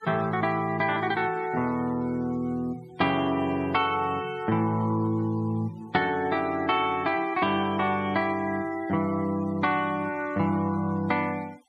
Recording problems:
noise reduction artefacts; signal-to-artefact ratio 25 dB

